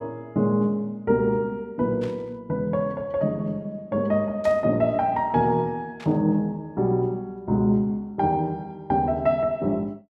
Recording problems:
static burst; at 2 s, at 4.5 s and at 6 s; peak -14 dB vs average level

